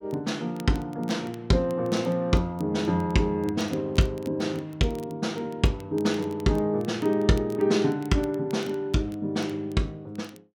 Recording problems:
crackling; vinyl, SNR 26 dB

